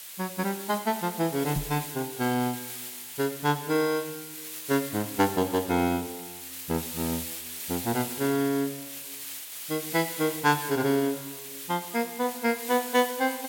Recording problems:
background hiss; slope +3 dB per octave, SNR 8 dB
knock on the microphone; at 1.5 s; peak +2 dB vs average level

